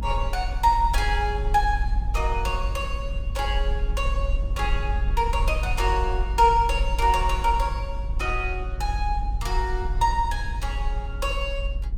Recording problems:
rumble; below 52 Hz, SNR 2 dB

